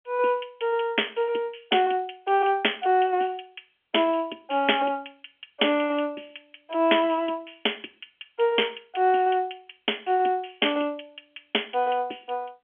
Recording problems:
phone line; 280 Hz to 3.3 kHz, G.711

